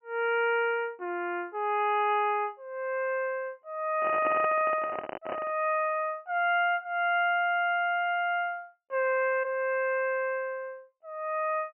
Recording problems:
treble cut off; nothing above 3 kHz
microphone handling noise; from 4 to 5.5 s; peak -3 dB vs average level

